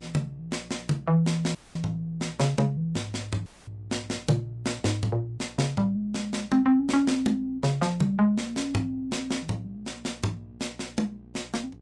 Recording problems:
lossy codec; Vorbis, log-spectral distance 2 dB
hum; 60 Hz, harmonics up to 840 Hz, SNR 24 dB
dropout; at 1.5 s and at 3.5 s

